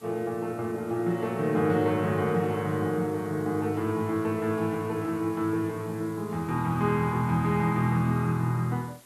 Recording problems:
background hiss; slope -2 dB per octave, SNR 25 dB

